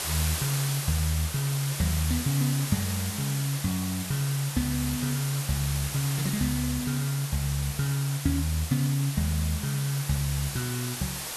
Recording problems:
hiss; slope 0 dB per octave, SNR 5 dB

